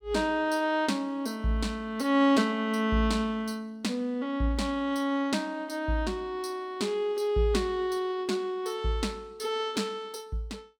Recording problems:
none

